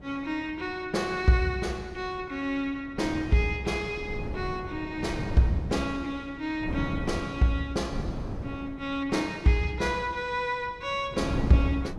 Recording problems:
wind on the microphone; below 290 Hz, SNR 8 dB

